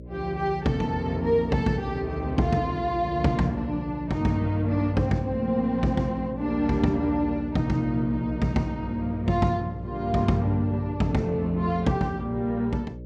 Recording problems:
hum; 60 Hz, harmonics up to 600 Hz, SNR 13 dB

